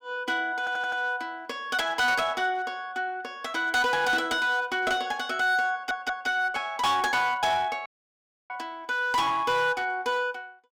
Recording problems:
distorted audio; hard clipping, uneven, signal-to-distortion ratio 11 dB
audio stuttering; at 0.5 s and at 5.5 s
dropout; at 8 s for 0.5 s

